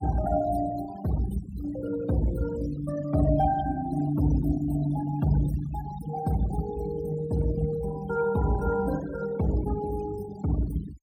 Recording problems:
noise reduction artefacts; signal-to-artefact ratio 15 dB

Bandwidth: 16.5 kHz